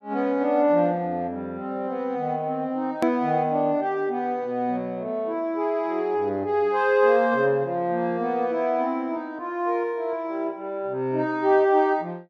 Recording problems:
edit click; at 3 s

